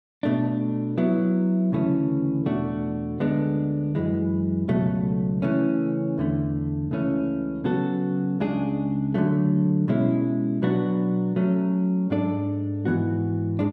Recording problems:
none

